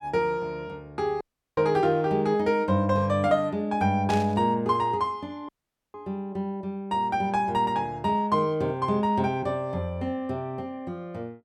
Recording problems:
audio cutting out; at 1 s and at 5.5 s
static burst; at 4 s; peak -6 dB vs average level

